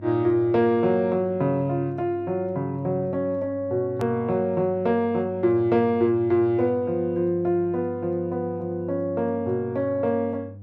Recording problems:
electrical hum; 50 Hz, harmonics up to 500 Hz, SNR 18 dB
click at an edit; at 4 s

